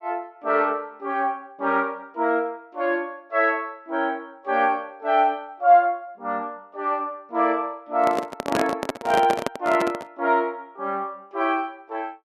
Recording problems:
microphone handling noise; from 8 to 10 s; peak +4 dB vs average level

